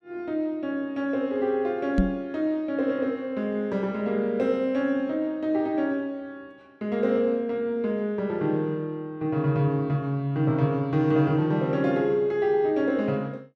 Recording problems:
microphone thump; at 2 s; peak +6 dB vs average level

